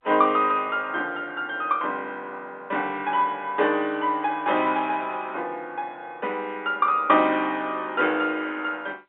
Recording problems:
phone line; 260 Hz to 3.6 kHz, G.711

